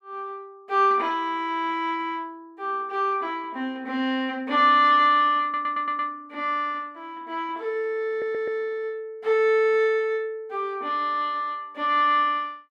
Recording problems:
audio stuttering; at 5.5 s and at 8 s

